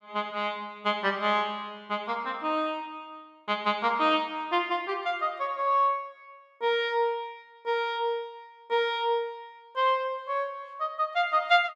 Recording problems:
none

